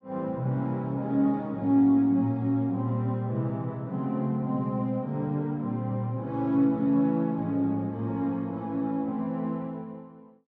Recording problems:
none

